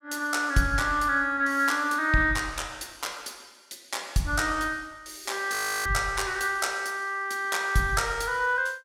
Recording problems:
frozen audio; at 5.5 s

